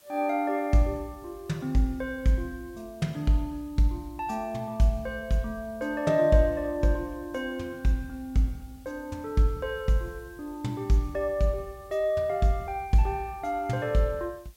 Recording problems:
hiss; slope -1 dB per octave, SNR 30 dB

